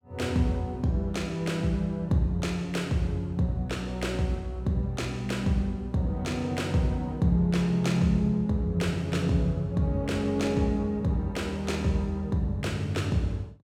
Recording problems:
none

